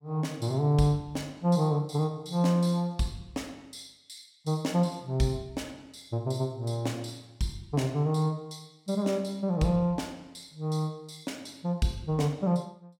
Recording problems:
none

